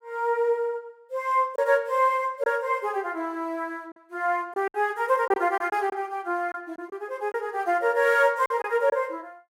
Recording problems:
lost packets; 5% of the sound replaced, filled with silence

